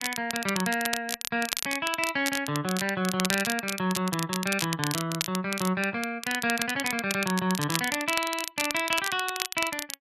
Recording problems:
crackling; vinyl, SNR 4 dB

